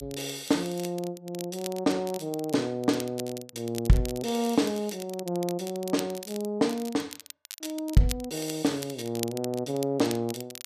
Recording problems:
crackling; vinyl, SNR 13 dB

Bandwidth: 14.5 kHz